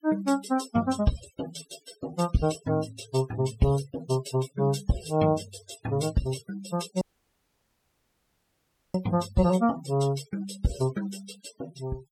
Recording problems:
denoising artefacts; signal-to-artefact ratio 14 dB
audio cutting out; at 7 s for 2 s

